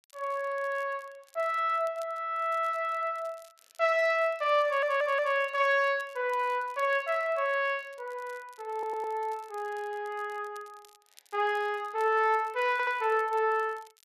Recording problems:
crackle; vinyl, SNR 29 dB
stutter; at 4.5 s, at 8.5 s and at 13 s

